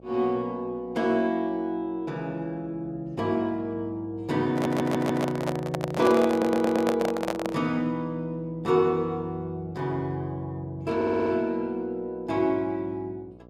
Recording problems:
hum; 60 Hz, harmonics up to 1.1 kHz, SNR 24 dB
audio stuttering; at 4.5 s, at 6.5 s and at 11 s
handling noise; from 4.5 to 7.5 s; peak +3 dB vs average level

